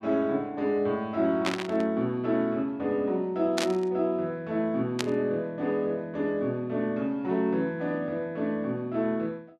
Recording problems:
static burst; at 1.5 s, at 3.5 s and at 5 s; peak +3 dB vs average level

